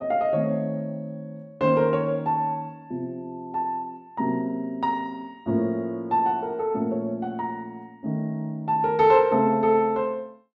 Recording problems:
none

